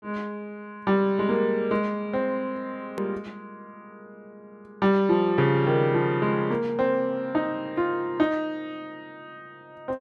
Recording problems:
edit click; at 3 s

